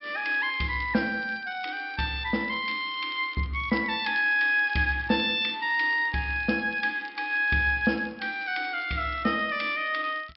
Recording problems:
low-pass filter; nothing above 5.4 kHz
crackle; vinyl, SNR 25 dB

